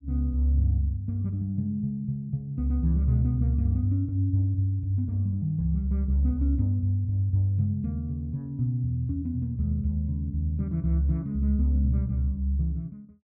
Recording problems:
none

